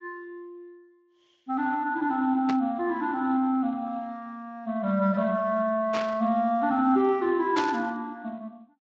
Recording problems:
lossy compression; Speex, log-spectral distance 2 dB
static burst; at 2.5 s, at 6 s and at 7.5 s; peak -2 dB vs average level

